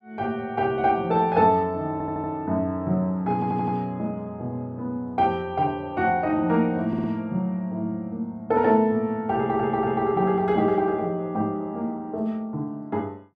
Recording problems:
audio stuttering; 4 times, first at 2 s

